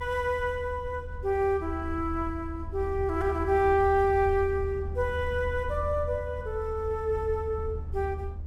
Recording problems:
low-frequency rumble; below 80 Hz, strongest tone 78 Hz, SNR 8 dB

